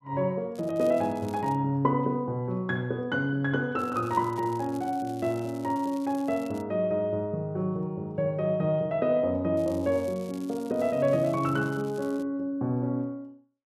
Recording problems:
crackle; from 0.5 to 1.5 s, from 4 to 6.5 s and from 9.5 to 12 s; loose cable, SNR 24 dB

